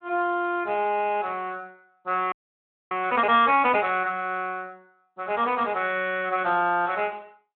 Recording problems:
telephone audio; 240 Hz to 3.5 kHz, Speex
audio freezing; at 2.5 s for 0.5 s

